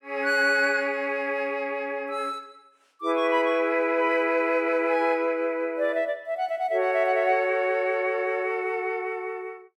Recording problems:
none

